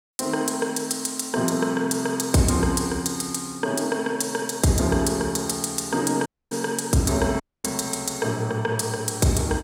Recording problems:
audio cutting out; at 6.5 s and at 7.5 s

